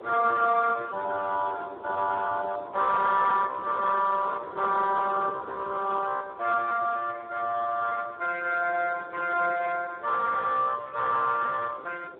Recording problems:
phone line; 340 Hz to 3.9 kHz, Speex
wind noise; below 600 Hz, SNR 19 dB

